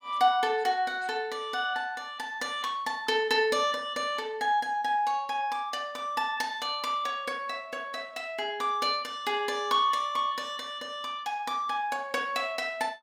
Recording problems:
none

